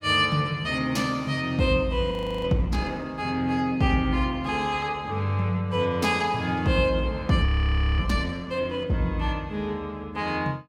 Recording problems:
audio freezing; at 2 s and at 7.5 s for 0.5 s

